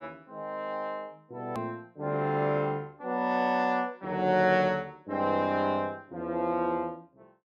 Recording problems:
click at an edit; at 1.5 s

